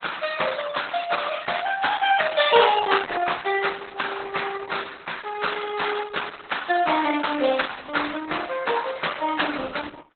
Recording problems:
lossy compression; Opus, then Opus, log-spectral distance 11 dB, nothing above 3.9 kHz

